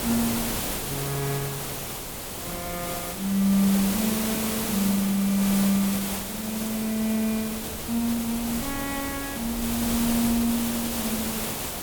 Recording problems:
background hiss; slope -3 dB per octave, SNR 3 dB
wind noise; below 130 Hz, SNR 19 dB

